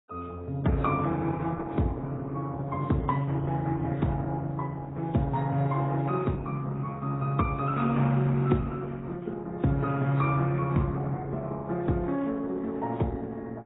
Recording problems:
codec artefacts; Opus, then AAC, log-spectral distance 2 dB, nothing above 3.7 kHz

